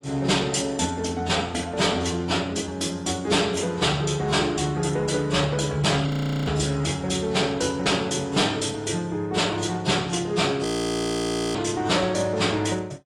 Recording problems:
codec artefacts; AAC, log-spectral distance 4 dB, nothing above 18.9 kHz
distorted audio; hard clipping, signal-to-distortion ratio 10 dB
audio freezing; at 6 s and at 11 s for 1 s

